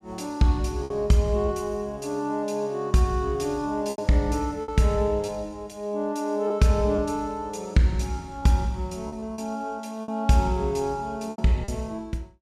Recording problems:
lost packets; 5% of the sound replaced, filled with repeated pitch periods

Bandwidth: 14 kHz